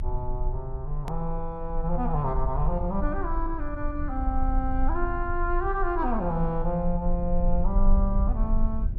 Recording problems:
low-frequency rumble; below 50 Hz, strongest tone 24 Hz, SNR 1 dB
hard cut with a click; at 1 s

